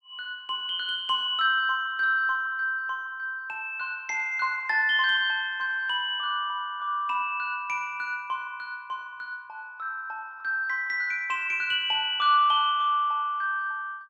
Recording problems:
none

